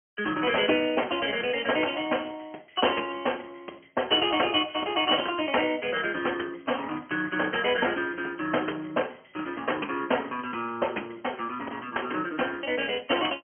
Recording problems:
telephone audio; 280 Hz to 3.3 kHz, Speex

